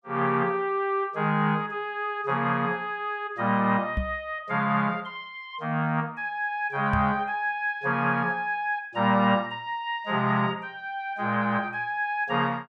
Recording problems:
knock on the microphone; at 4 s and at 7 s; peak +1 dB vs average level

